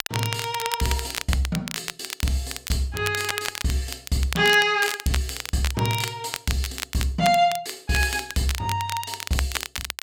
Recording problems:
crackle; vinyl, SNR 7 dB

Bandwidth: 16.5 kHz